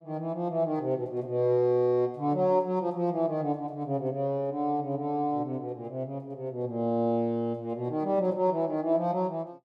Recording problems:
none

